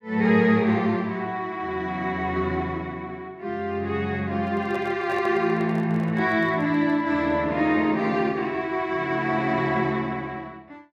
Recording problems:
handling noise; from 4.5 to 7 s; peak -10 dB vs average level

